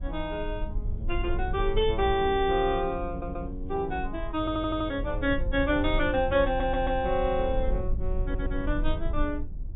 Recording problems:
treble missing; nothing above 4 kHz
rumble; below 60 Hz, SNR 6 dB
audio stuttering; 4 times, first at 3 s

